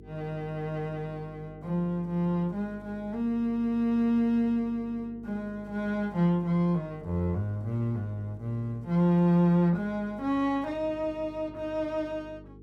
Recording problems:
electrical hum; 50 Hz, harmonics up to 450 Hz, SNR 20 dB

